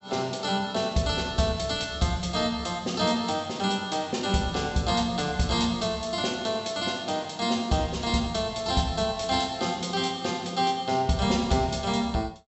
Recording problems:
low-pass filter; nothing above 7.8 kHz

